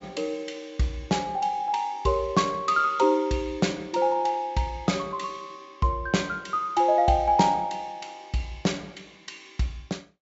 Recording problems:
treble cut off; nothing above 8 kHz

